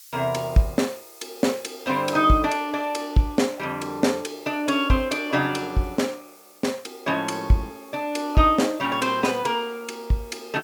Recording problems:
hiss; slope +8 dB per octave, SNR 24 dB

